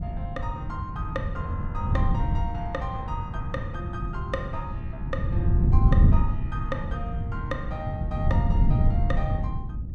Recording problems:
wind on the microphone; below 120 Hz, SNR -8 dB

